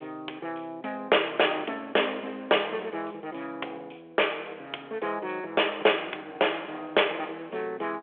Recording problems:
phone line; 340 Hz to 3.5 kHz, G.726

